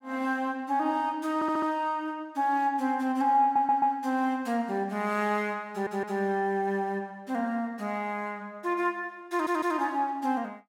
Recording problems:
audio stuttering; 4 times, first at 1.5 s

